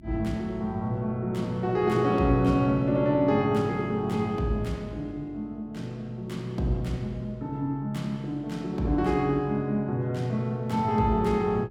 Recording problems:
electrical hum; 50 Hz, harmonics up to 350 Hz, SNR 24 dB

